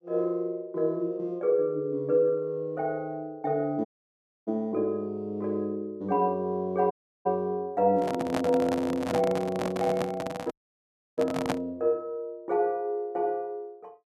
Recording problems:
dropout; at 4 s for 0.5 s, at 7 s and at 11 s for 0.5 s
microphone handling noise; from 8 to 12 s; peak +4 dB vs average level

